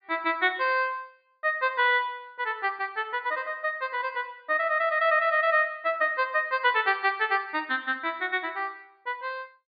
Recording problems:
treble missing; nothing above 4.7 kHz

